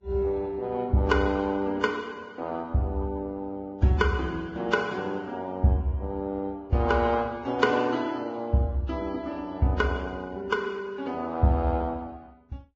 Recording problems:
lossy codec; Vorbis, then Vorbis, log-spectral distance 2 dB, nothing above 7.3 kHz

